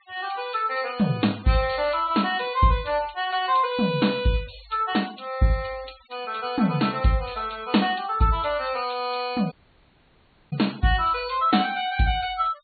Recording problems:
treble cut off; nothing above 4.5 kHz
noise reduction artefacts; signal-to-artefact ratio 22 dB
dropout; at 9.5 s for 1 s

